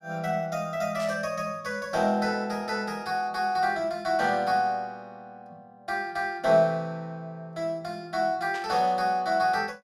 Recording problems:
burst of static; at 1 s and at 8.5 s; peak -10 dB vs average level

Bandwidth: 15.5 kHz